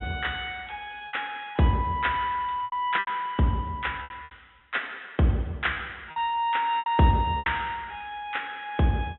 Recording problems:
treble cut off; nothing above 3.6 kHz
lost packets; 7% of the sound replaced, filled with repeated pitch periods

